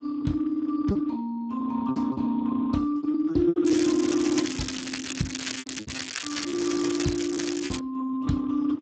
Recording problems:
lossy codec; Speex, log-spectral distance 8 dB, nothing above 7.3 kHz
lost packets; 9% of the sound replaced, filled with repeated pitch periods
crackling; from 3.5 to 8 s; loose cable, SNR 6 dB

